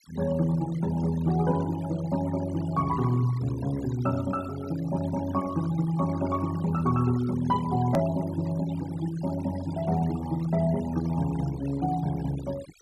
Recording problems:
noise reduction artefacts; signal-to-artefact ratio 17 dB
hard cut with a click; at 8 s

